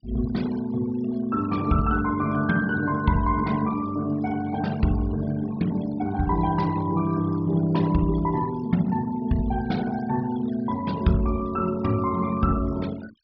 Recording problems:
treble cut off; nothing above 5.5 kHz
denoising artefacts; signal-to-artefact ratio 19 dB

